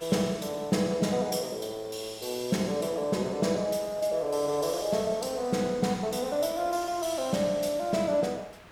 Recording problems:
hiss; SNR 23 dB

